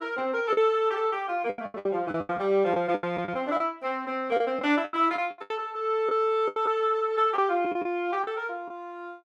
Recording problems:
lost packets; 12% of the sound replaced, filled with the last packet

